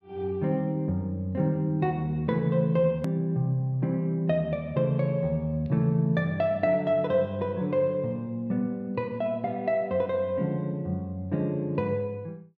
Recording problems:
edit click; at 3 s

